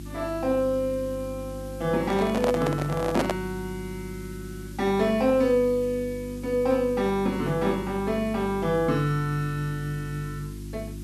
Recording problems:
electrical hum; 50 Hz, harmonics up to 350 Hz, SNR 13 dB
background hiss; slope +2 dB per octave, SNR 23 dB
handling noise; from 2 to 3.5 s; peak +4 dB vs average level

